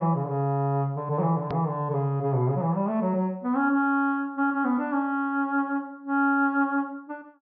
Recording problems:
treble cut off; nothing above 5.5 kHz
hard cut with a click; at 1.5 s

